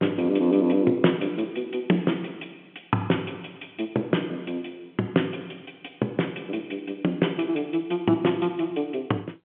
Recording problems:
phone line; 150 Hz to 3.4 kHz, G.711

